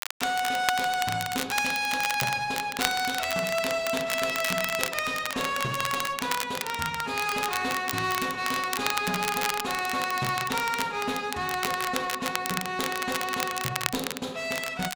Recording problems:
distorted audio; hard clipping, uneven, signal-to-distortion ratio 10 dB
crackling; vinyl, SNR 5 dB

